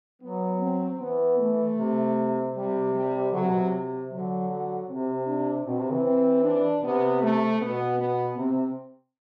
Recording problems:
none

